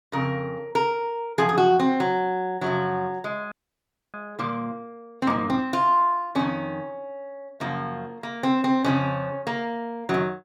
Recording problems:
audio freezing; at 3.5 s for 0.5 s

